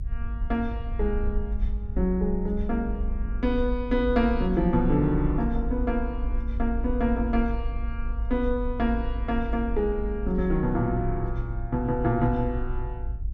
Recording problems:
low-frequency rumble; below 54 Hz, SNR 5 dB

